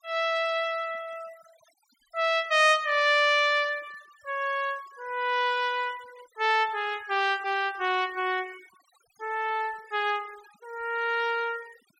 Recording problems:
noise reduction artefacts; signal-to-artefact ratio 24 dB

